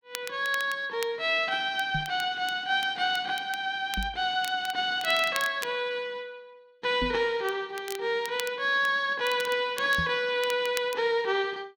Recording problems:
crackle; vinyl, SNR 15 dB
microphone bump; 4 times, first at 2 s; peak -2 dB vs average level

